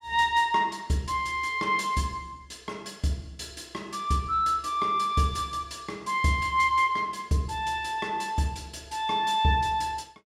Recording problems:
none

